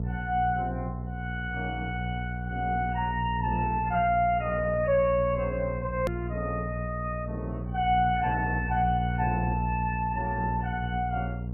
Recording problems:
lossy codec; MP3, log-spectral distance 2 dB, nothing above 2.6 kHz
distortion; soft clipping, signal-to-distortion ratio 9 dB
hum; 60 Hz, harmonics up to 480 Hz, SNR 4 dB
edit click; at 6 s

